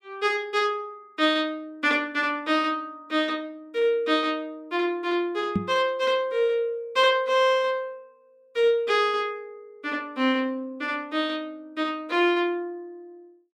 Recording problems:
microphone bump; at 5.5 s; peak +4 dB vs average level

